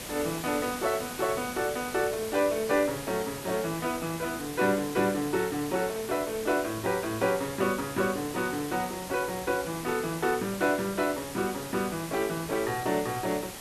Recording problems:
hiss; slope -3 dB per octave, SNR 9 dB

